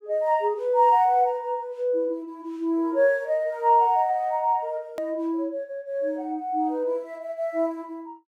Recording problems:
edit click; at 5 s

